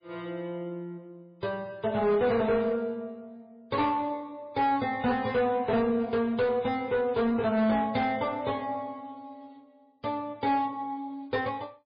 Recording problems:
lossy compression; MP3, log-spectral distance 2 dB
distorted audio; hard clipping, uneven, signal-to-distortion ratio 11 dB

